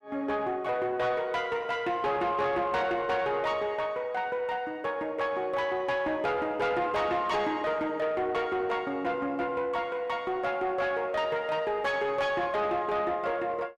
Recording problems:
distortion; soft clipping, signal-to-distortion ratio 12 dB

